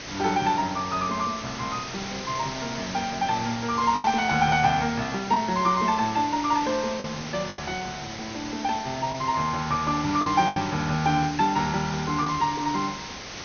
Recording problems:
low-pass filter; nothing above 6.3 kHz
background hiss; slope -1 dB per octave, SNR 10 dB
packet loss; 3% of the sound replaced, filled with the last packet

